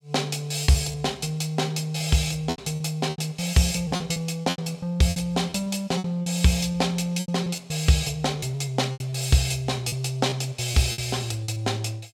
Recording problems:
lost packets; 10% of the sound replaced, filled with repeated pitch periods

